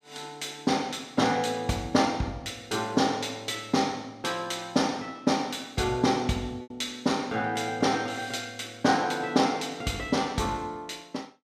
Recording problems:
lost packets; 0.7% of the sound replaced, filled with repeated pitch periods

